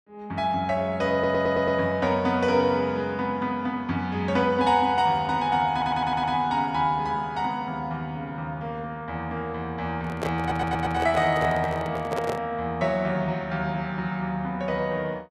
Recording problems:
audio stuttering; at 1 s, at 5.5 s and at 10 s
handling noise; from 10 to 12 s; peak -1 dB vs average level

